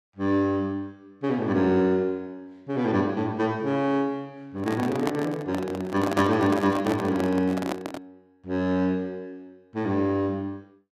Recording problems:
microphone handling noise; from 4.5 to 8 s; peak +2 dB vs average level

